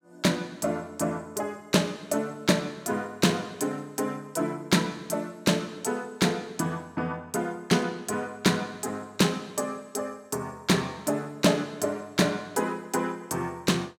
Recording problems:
none

